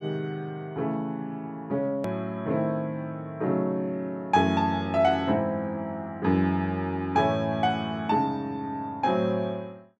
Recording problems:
hard cut with a click; at 2 s

